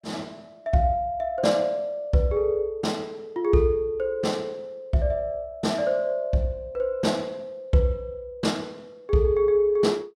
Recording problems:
none

